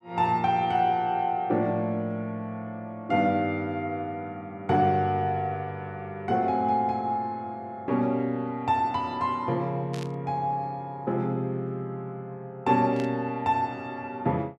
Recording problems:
burst of static; at 10 s and at 13 s; peak -10 dB vs average level

